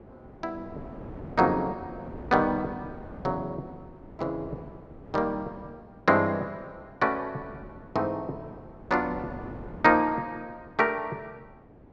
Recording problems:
wind on the microphone; below 490 Hz, SNR 17 dB

